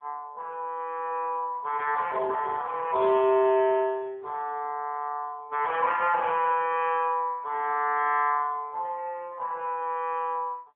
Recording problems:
phone line; 190 Hz to 3.4 kHz, AMR-NB

